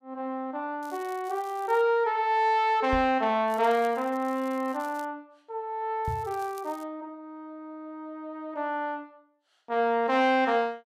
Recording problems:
crackling; at 1 s, from 3.5 to 5 s and at 6 s; loose cable, SNR 26 dB
knock on the microphone; at 3 s and at 6 s; peak -3 dB vs average level

